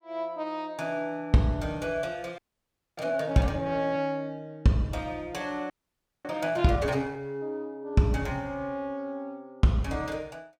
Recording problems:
audio freezing; at 2.5 s for 0.5 s and at 5.5 s for 0.5 s

